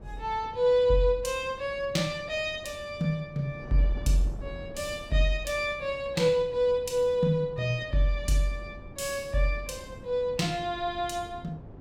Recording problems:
wind on the microphone; below 300 Hz, SNR 18 dB

